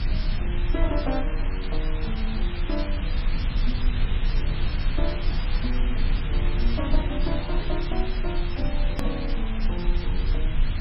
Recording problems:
lossy codec; MP3, log-spectral distance 9 dB, nothing above 13.1 kHz
background hiss; SNR 3 dB
rumble; below 48 Hz, strongest tone 26 Hz, SNR -5 dB
hard cut with a click; at 9 s

